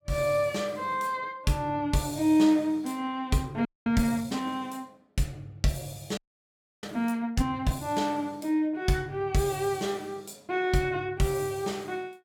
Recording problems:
frozen audio; at 3.5 s and at 6 s for 0.5 s

